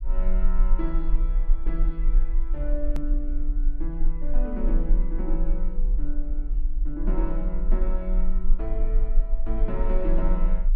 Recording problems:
low-frequency rumble; below 34 Hz, strongest tone 18 Hz, SNR -7 dB
hard cut with a click; at 3 s

